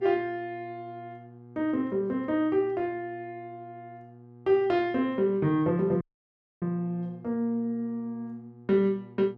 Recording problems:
hum; 60 Hz, harmonics up to 840 Hz, SNR 21 dB
audio cutting out; at 6 s for 0.5 s

